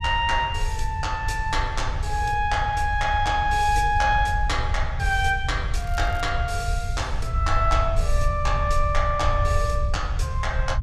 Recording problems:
low-frequency rumble; below 80 Hz, SNR 3 dB
crackle; at 6 s; loose cable, SNR 25 dB

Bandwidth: 14.5 kHz